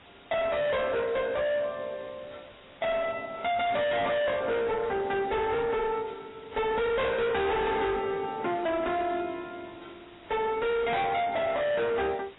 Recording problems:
codec artefacts; AAC, log-spectral distance 8 dB, nothing above 3.8 kHz
distorted audio; hard clipping, signal-to-distortion ratio 6 dB
hiss; SNR 25 dB

